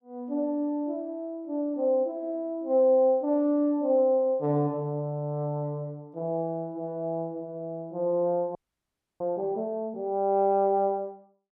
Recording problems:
audio freezing; at 8.5 s for 0.5 s

